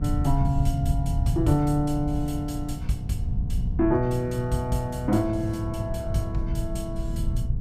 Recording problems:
hum; 60 Hz, harmonics up to 720 Hz, SNR 11 dB
rumble; below 110 Hz, SNR 4 dB

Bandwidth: 15.5 kHz